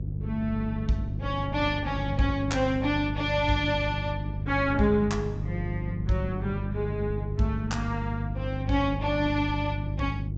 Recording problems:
treble cut off; nothing above 8 kHz
hum; 50 Hz, harmonics up to 350 Hz, SNR 4 dB
wind on the microphone; below 220 Hz, SNR 12 dB

